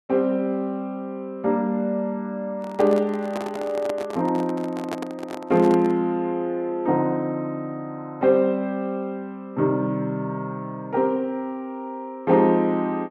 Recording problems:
microphone handling noise; from 2.5 to 6 s; peak -2 dB vs average level

